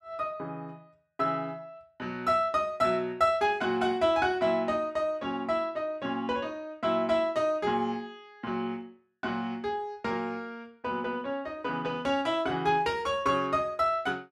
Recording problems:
none

